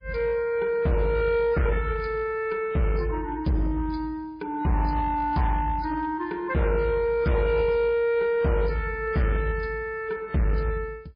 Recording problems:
codec artefacts; MP3, log-spectral distance 2 dB, nothing above 11 kHz
distorted audio; hard clipping, uneven, signal-to-distortion ratio 10 dB

